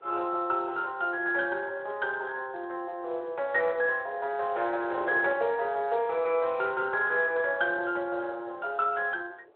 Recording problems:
phone line; 370 Hz to 3.3 kHz, Speex
wind on the microphone; below 630 Hz, SNR 20 dB

